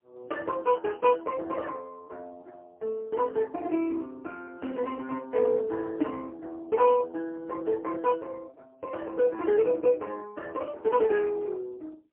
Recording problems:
phone line; 260 Hz to 2.9 kHz, AMR-NB, then MP3

